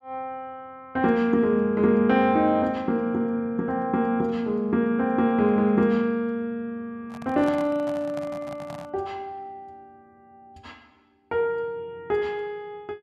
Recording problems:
handling noise; from 7 to 9 s; peak -8 dB vs average level

